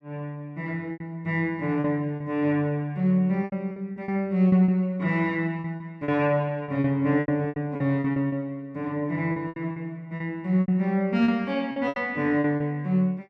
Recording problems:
packet loss; 11% of the sound replaced, filled with repeated pitch periods

